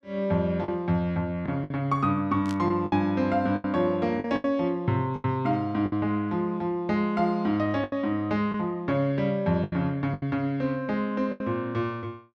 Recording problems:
lost packets; 7% of the sound replaced, filled with the last packet
static burst; at 2.5 s; peak -10 dB vs average level

